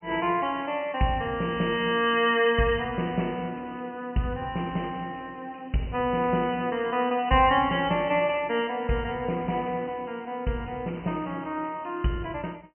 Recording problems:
treble missing; nothing above 3.1 kHz

